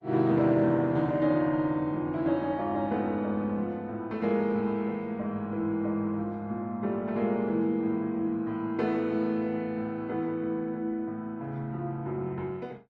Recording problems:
lossy compression; Opus, log-spectral distance 2 dB

